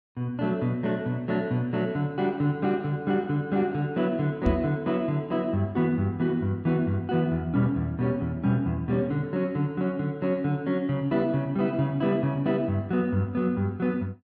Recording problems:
microphone bump; at 4.5 s; peak +5 dB vs average level

